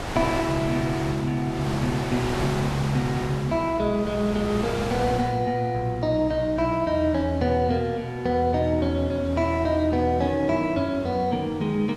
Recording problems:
wind on the microphone; below 1.8 kHz, SNR 9 dB

